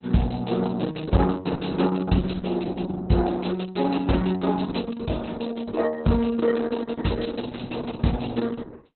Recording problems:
lossy compression; Opus, log-spectral distance 7 dB, nothing above 4.1 kHz

